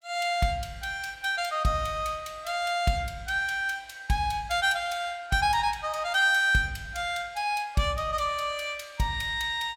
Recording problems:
none

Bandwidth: 17.5 kHz